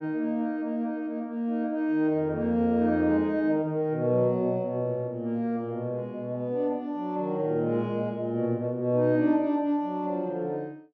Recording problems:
none

